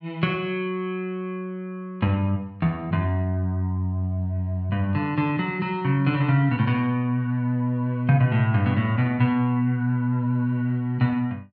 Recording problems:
none

